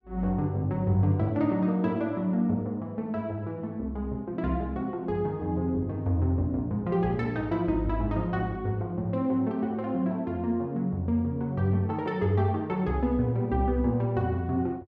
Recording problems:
none

